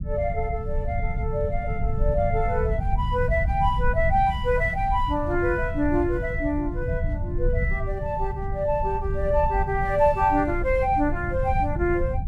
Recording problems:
low-frequency rumble; below 98 Hz, SNR 4 dB

